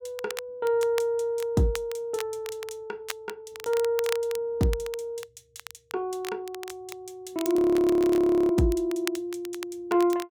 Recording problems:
crackle; vinyl, SNR 15 dB
audio freezing; at 7.5 s for 1 s

